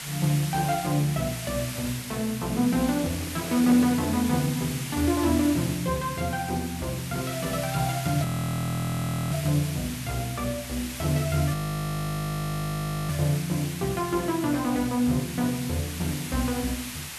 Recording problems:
background hiss; slope +1 dB per octave, SNR 9 dB
handling noise; from 3 to 4.5 s; peak -8 dB vs average level
audio freezing; at 8 s for 1 s and at 12 s for 1.5 s

